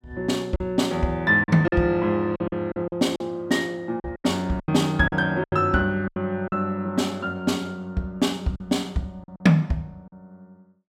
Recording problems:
lost packets; 9% of the sound replaced, filled with silence

